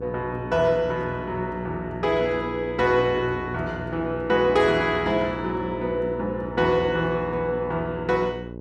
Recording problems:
mains hum; 60 Hz, harmonics up to 1 kHz, SNR 11 dB

